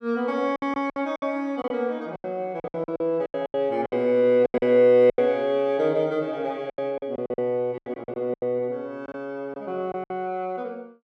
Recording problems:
packet loss; 14% of the sound replaced, filled with silence

